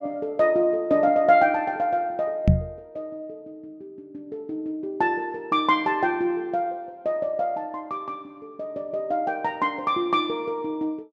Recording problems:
knock on the microphone; at 2.5 s; peak +9 dB vs average level

